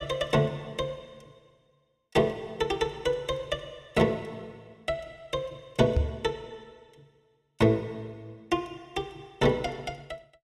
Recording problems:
knock on the microphone; at 6 s; peak +7 dB vs average level

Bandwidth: 15 kHz